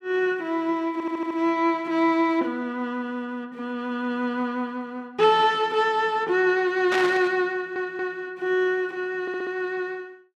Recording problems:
stutter; at 1 s, at 7.5 s and at 9 s
burst of static; at 7 s; peak 0 dB vs average level

